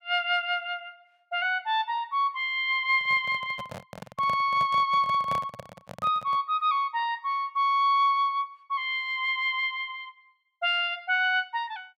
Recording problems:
microphone handling noise; from 3 to 6.5 s; peak -7 dB vs average level

